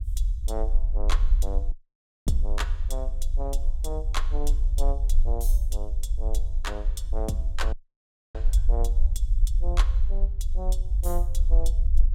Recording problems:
low-frequency rumble; below 48 Hz, strongest tone 22 Hz, SNR -9 dB
dropout; at 1.5 s for 0.5 s and at 7.5 s for 0.5 s

